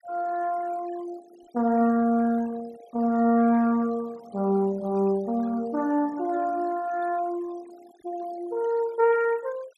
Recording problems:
denoising artefacts; signal-to-artefact ratio 22 dB

